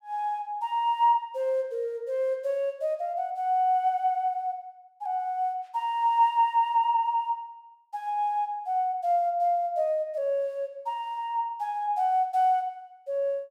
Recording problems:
none

